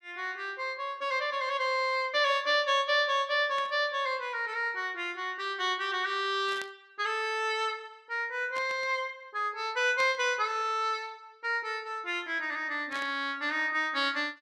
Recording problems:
burst of static; 5 times, first at 3.5 s; peak -8 dB vs average level

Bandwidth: 13 kHz